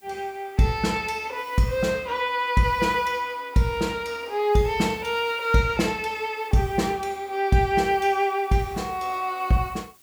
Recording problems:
hiss; slope 0 dB per octave, SNR 27 dB

